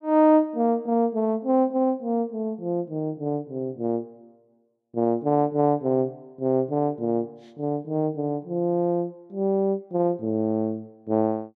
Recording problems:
none

